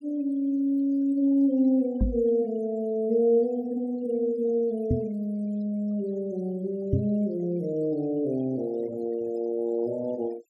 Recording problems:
noise reduction artefacts; signal-to-artefact ratio 26 dB
microphone thump; at 2 s, at 5 s and at 7 s; peak +5 dB vs average level

